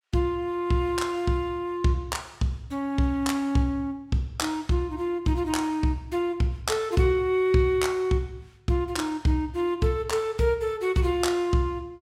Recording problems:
none

